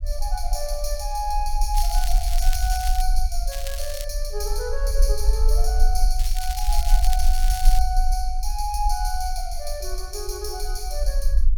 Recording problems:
rumble; below 44 Hz, strongest tone 22 Hz, SNR -4 dB
crackling; from 1.5 to 3 s, at 3.5 s and from 6 to 8 s; loose cable, SNR 6 dB

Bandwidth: 17.5 kHz